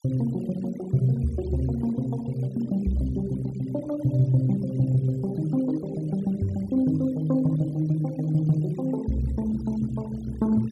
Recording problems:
denoising artefacts; signal-to-artefact ratio 25 dB

